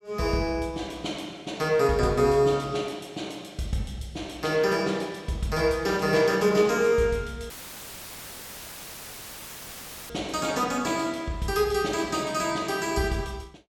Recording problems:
dropout; at 7.5 s for 2.5 s; filled with static

